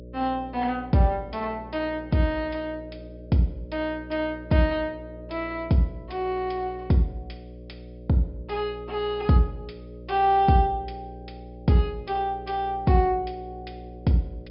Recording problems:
treble missing; nothing above 5.5 kHz
hum; 60 Hz, harmonics up to 600 Hz, SNR 17 dB

